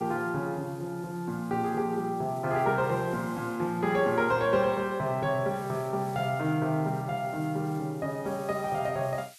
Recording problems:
background hiss; SNR 24 dB

